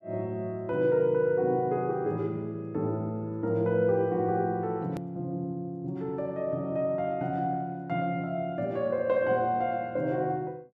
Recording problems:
edit click; at 5 s

